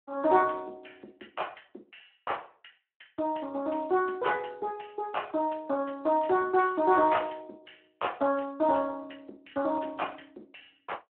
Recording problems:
telephone audio; 280 Hz to 3.5 kHz, Speex

